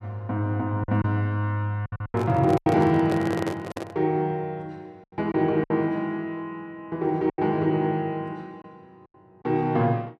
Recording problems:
packet loss; 6% of the sound replaced, filled with silence
handling noise; from 2 to 4 s; peak 0 dB vs average level

